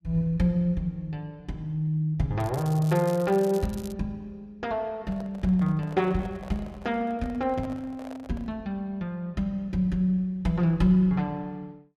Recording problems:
crackling; from 2.5 to 4 s; loose cable, SNR 19 dB
handling noise; from 5 to 8.5 s; peak -11 dB vs average level

